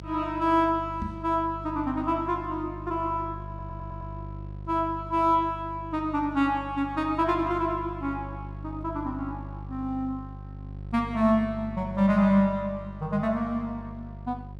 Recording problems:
hum; 50 Hz, harmonics up to 550 Hz, SNR 13 dB
microphone thump; at 1 s; peak -3 dB vs average level
audio stuttering; at 3.5 s

